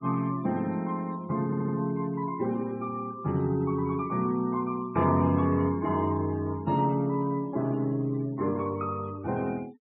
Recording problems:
treble missing; nothing above 4 kHz
denoising artefacts; signal-to-artefact ratio 23 dB
audio stuttering; at 1.5 s

